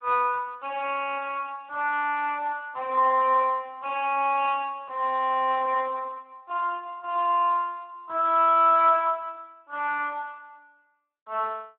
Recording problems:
telephone audio; 300 Hz to 3.4 kHz, Speex

